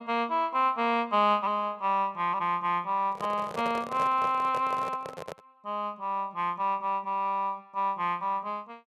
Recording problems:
microphone handling noise; from 3 to 5.5 s; peak -5 dB vs average level

